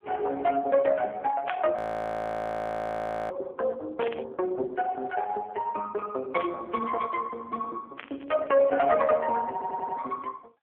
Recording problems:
telephone audio; 280 Hz to 2.8 kHz, AMR-NB
static burst; 4 times, first at 1.5 s; peak -1 dB vs average level
frozen audio; at 2 s for 1.5 s
stutter; at 9.5 s

